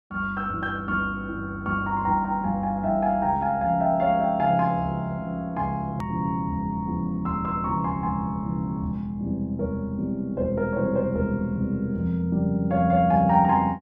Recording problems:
edit click; at 6 s

